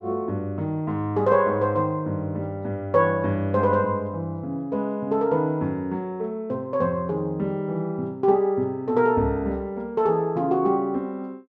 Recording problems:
none

